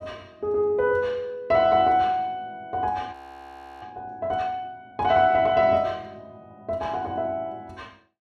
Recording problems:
audio freezing; at 3 s for 0.5 s

